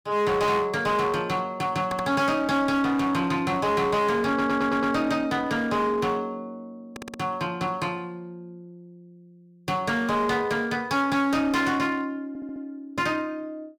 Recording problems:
distorted audio; hard clipping, uneven, signal-to-distortion ratio 11 dB
stutter; 4 times, first at 2 s

